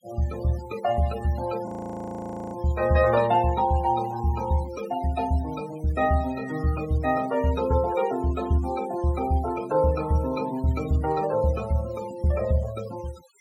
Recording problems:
noise reduction artefacts; signal-to-artefact ratio 17 dB
audio freezing; at 1.5 s for 1 s

